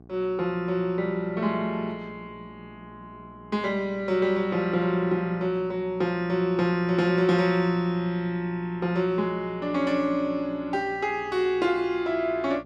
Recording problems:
hum; 60 Hz, harmonics up to 1.2 kHz, SNR 24 dB

